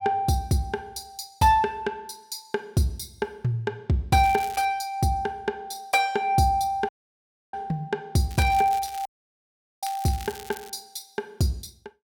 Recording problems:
crackle; at 4 s and from 8.5 to 11 s; loose cable, SNR 17 dB
audio cutting out; at 7 s for 0.5 s and at 9 s for 1 s

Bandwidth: 17.5 kHz